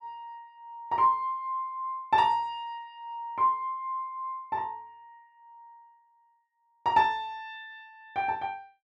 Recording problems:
none

